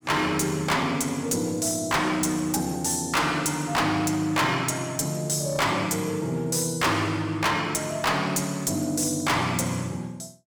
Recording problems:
distorted audio; hard clipping, uneven, signal-to-distortion ratio 6 dB

